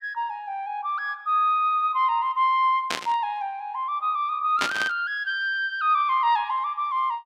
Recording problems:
burst of static; at 3 s and at 4.5 s; peak +2 dB vs average level

